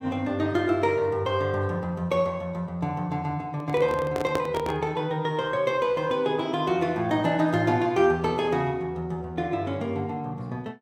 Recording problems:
handling noise; from 3.5 to 5 s; peak +2 dB vs average level

